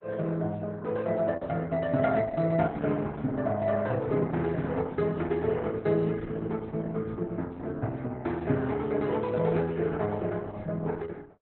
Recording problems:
lossy compression; Opus, log-spectral distance 3 dB, nothing above 4 kHz

